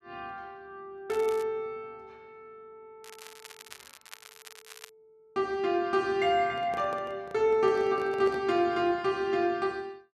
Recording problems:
crackle; at 1 s and from 3 to 5 s; loose cable, SNR 20 dB
microphone handling noise; from 6.5 to 8.5 s; peak -9 dB vs average level

